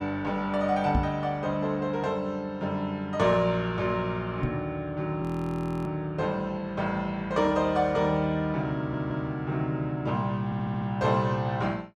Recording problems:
microphone bump; at 1 s and at 4.5 s; peak +5 dB vs average level
frozen audio; at 5 s for 0.5 s
audio stuttering; at 9 s and at 10 s

